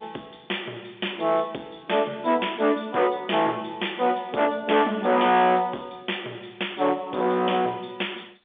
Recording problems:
phone line; 260 Hz to 3.6 kHz, G.711
distortion; hard clipping, uneven, signal-to-distortion ratio 9 dB

